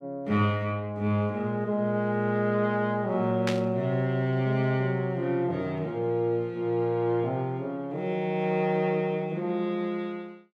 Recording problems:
static burst; at 3.5 s; peak +1 dB vs average level

